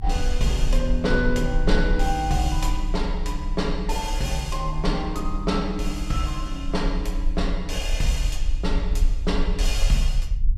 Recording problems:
rumble; below 46 Hz, strongest tone 32 Hz, SNR 1 dB

